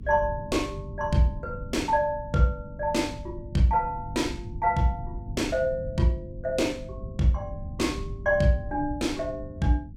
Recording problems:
hum; 50 Hz, harmonics up to 300 Hz, SNR 17 dB
low-frequency rumble; below 130 Hz, SNR 13 dB

